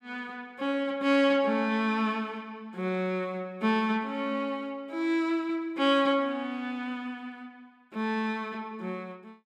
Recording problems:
none

